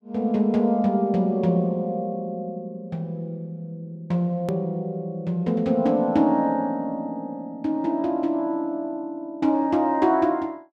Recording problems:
click at an edit; at 4.5 s

